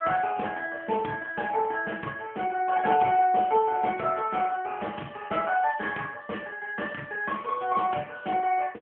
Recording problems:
phone line; 240 Hz to 2.8 kHz, AMR-NB

